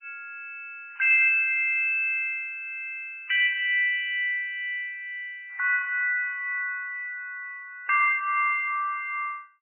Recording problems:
lossy compression; MP3, log-spectral distance 2 dB, nothing above 2.7 kHz

